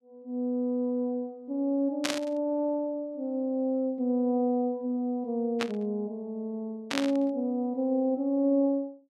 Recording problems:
static burst; at 2 s, at 5.5 s and at 7 s; peak +3 dB vs average level

